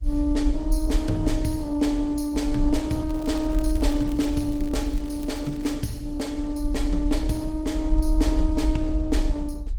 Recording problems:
lossy codec; Opus, log-spectral distance 2 dB, nothing above 18.5 kHz
low-frequency rumble; below 52 Hz, SNR 0 dB
crackle; from 3 to 6 s; loose cable, SNR 22 dB

